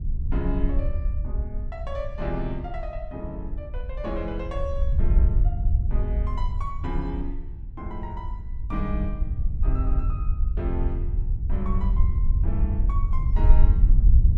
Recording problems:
wind on the microphone; below 64 Hz, SNR -8 dB

